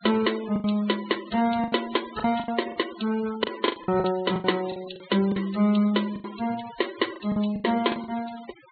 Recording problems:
low-pass filter; nothing above 4.4 kHz
denoising artefacts; signal-to-artefact ratio 16 dB
lost packets; 12% of the sound replaced, filled with the last packet

